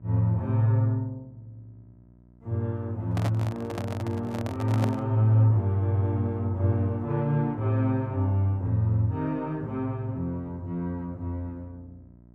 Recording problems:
electrical hum; 60 Hz, harmonics up to 960 Hz, SNR 25 dB
microphone handling noise; from 3 to 5 s; peak -1 dB vs average level

